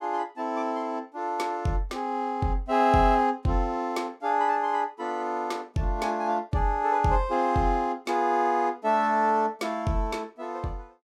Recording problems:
none

